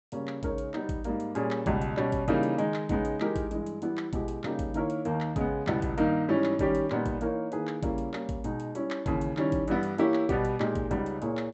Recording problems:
treble missing; nothing above 7.9 kHz

